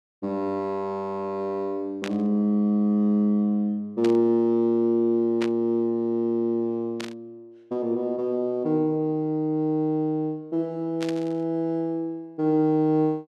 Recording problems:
burst of static; 5 times, first at 2 s; peak -5 dB vs average level

